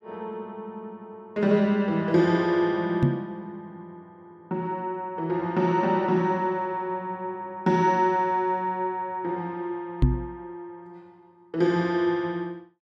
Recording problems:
microphone bump; at 3 s and at 10 s; peak +9 dB vs average level

